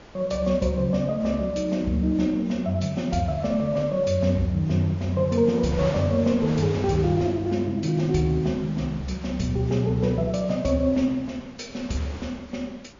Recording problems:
low-pass filter; nothing above 7.1 kHz
codec artefacts; Vorbis, log-spectral distance 2 dB
wind on the microphone; below 1.5 kHz, SNR 18 dB

